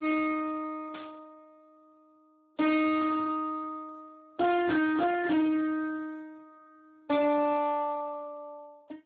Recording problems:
lossy compression; AAC, then Speex, log-spectral distance 3 dB, nothing above 3.8 kHz
distortion; soft clipping, signal-to-distortion ratio 11 dB
static burst; at 1 s and at 3 s; peak -13 dB vs average level

